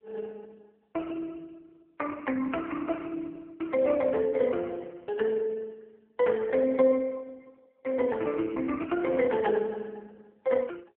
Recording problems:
telephone audio; 280 Hz to 3.2 kHz, AMR-NB

